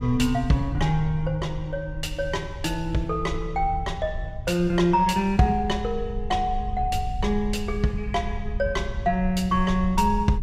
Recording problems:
rumble; below 76 Hz, SNR 9 dB

